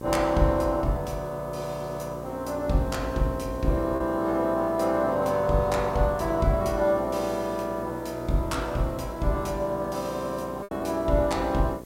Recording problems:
hum; 60 Hz, harmonics up to 1.2 kHz, SNR 13 dB
background hiss; slope -1 dB per octave, SNR 27 dB
packet loss; 1.2% of the sound replaced, filled with repeated pitch periods

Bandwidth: 16 kHz